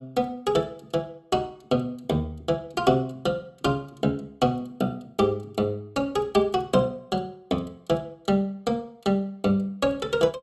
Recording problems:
none

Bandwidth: 14.5 kHz